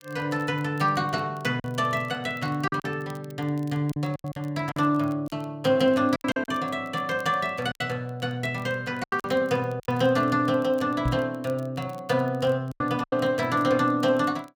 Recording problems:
crackle; vinyl, SNR 30 dB
packet loss; 7% of the sound replaced, filled with silence
microphone bump; at 11 s; peak +2 dB vs average level

